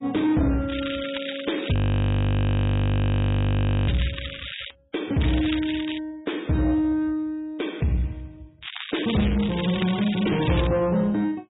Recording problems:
low-pass filter; nothing above 3.8 kHz
lossy codec; MP3, log-spectral distance 10 dB
distortion; soft clipping, signal-to-distortion ratio 11 dB
crackle; from 0.5 to 4.5 s, at 5 s and from 8.5 to 11 s; loose cable, SNR 10 dB
audio freezing; at 1.5 s for 2 s

